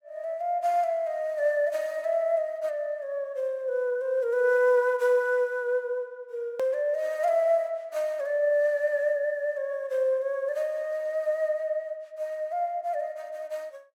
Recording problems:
click at an edit; at 6.5 s

